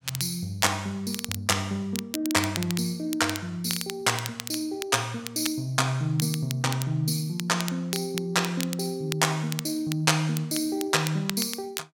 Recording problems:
crackle; vinyl, SNR 10 dB

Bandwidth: 16.5 kHz